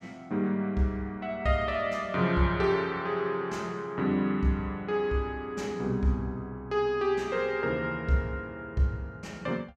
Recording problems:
none

